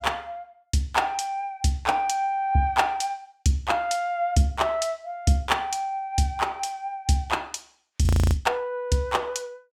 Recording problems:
audio freezing; at 8 s

